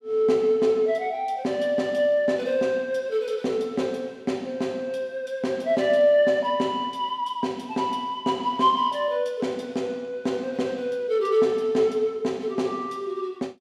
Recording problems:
none

